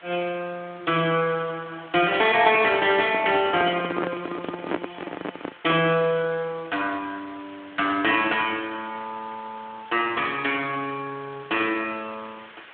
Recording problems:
telephone audio; 240 Hz to 3.6 kHz, Speex
background hiss; SNR 22 dB
microphone handling noise; from 2.5 to 6 s; peak +2 dB vs average level

